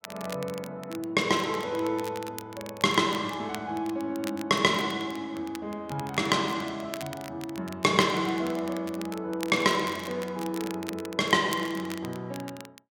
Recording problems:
crackle; vinyl, SNR 16 dB

